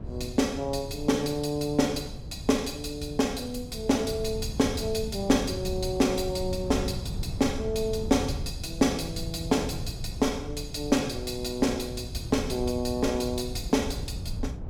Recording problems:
wind noise; below 140 Hz, SNR 9 dB

